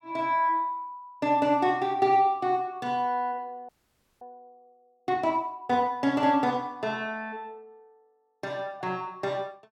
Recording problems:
audio freezing; at 3.5 s for 0.5 s

